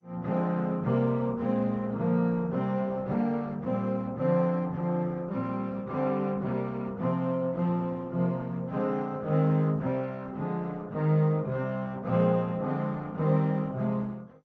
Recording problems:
codec artefacts; MP2, then Opus, log-spectral distance 2 dB

